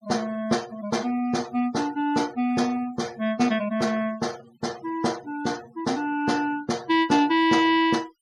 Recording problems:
denoising artefacts; signal-to-artefact ratio 22 dB

